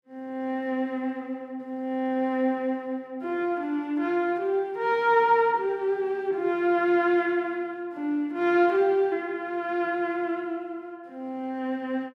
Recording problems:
none

